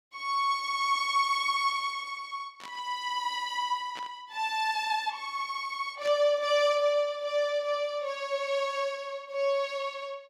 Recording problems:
static burst; at 2.5 s, at 4 s and at 6 s; peak -9 dB vs average level

